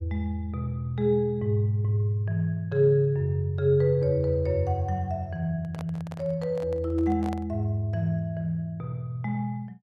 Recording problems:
handling noise; from 5.5 to 7.5 s; peak -9 dB vs average level

